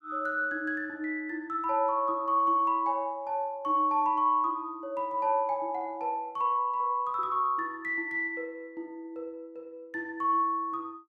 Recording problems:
none

